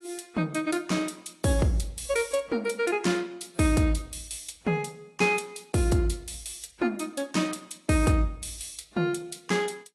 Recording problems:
codec artefacts; AAC, log-spectral distance 6 dB, nothing above 11.3 kHz

